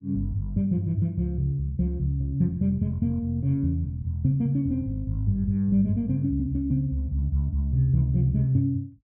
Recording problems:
none

